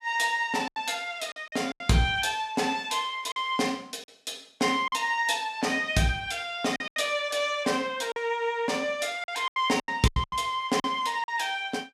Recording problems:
lost packets; 8% of the sound replaced, filled with silence

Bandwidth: 15 kHz